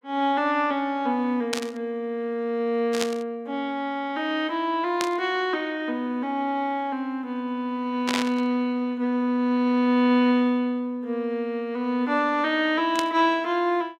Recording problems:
static burst; 5 times, first at 1.5 s; peak +2 dB vs average level

